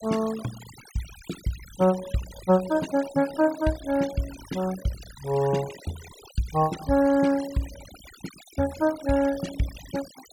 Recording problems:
noise reduction artefacts; signal-to-artefact ratio 16 dB

